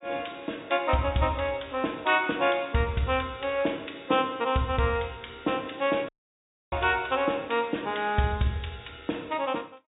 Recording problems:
treble missing; nothing above 4 kHz
audio cutting out; at 6 s for 0.5 s

